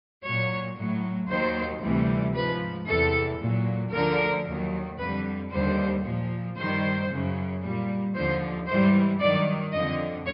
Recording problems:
low-pass filter; nothing above 5.2 kHz

